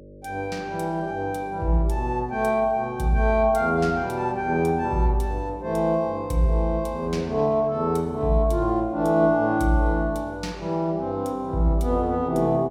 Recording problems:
hum; 50 Hz, harmonics up to 600 Hz, SNR 22 dB

